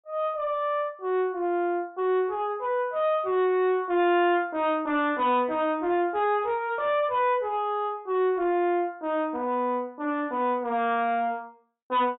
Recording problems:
treble cut off; nothing above 4 kHz
distorted audio; soft clipping, signal-to-distortion ratio 10 dB

